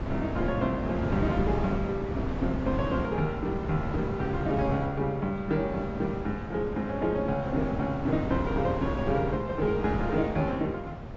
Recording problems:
codec artefacts; AAC, log-spectral distance 2 dB
wind on the microphone; below 380 Hz, SNR 5 dB

